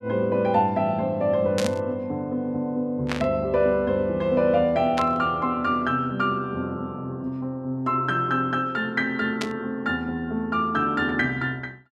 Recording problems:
burst of static; 4 times, first at 1.5 s; peak -1 dB vs average level

